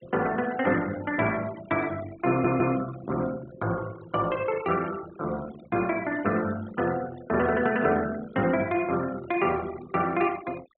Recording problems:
treble missing; nothing above 4 kHz
denoising artefacts; signal-to-artefact ratio 18 dB
stutter; at 2.5 s

